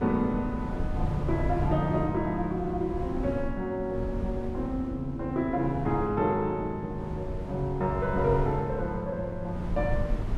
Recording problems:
wind on the microphone; below 120 Hz, SNR 7 dB

